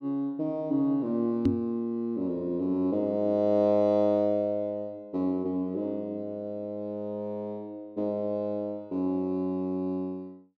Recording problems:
microphone bump; at 1.5 s; peak +8 dB vs average level

